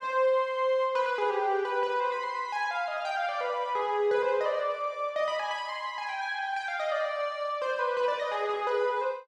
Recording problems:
none

